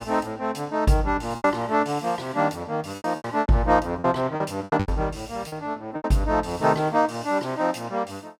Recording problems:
packet loss; 9% of the sound replaced, filled with repeated pitch periods

